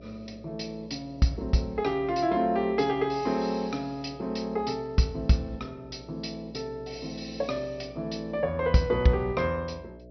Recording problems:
treble missing; nothing above 5.9 kHz
electrical hum; 60 Hz, harmonics up to 660 Hz, SNR 19 dB

